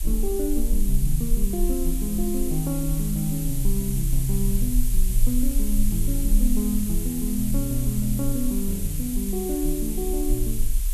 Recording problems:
hiss; slope +3 dB per octave, SNR 6 dB
low-frequency rumble; below 38 Hz, strongest tone 20 Hz, SNR 2 dB

